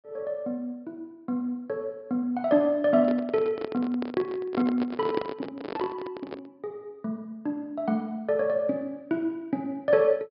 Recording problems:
low-pass filter; nothing above 5.2 kHz
microphone handling noise; from 3 to 6.5 s; peak +3 dB vs average level

